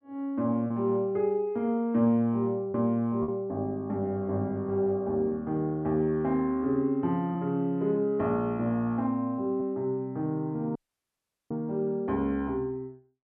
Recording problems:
lost packets; 1.3% of the sound replaced, filled with repeated pitch periods
audio cutting out; at 11 s for 1 s

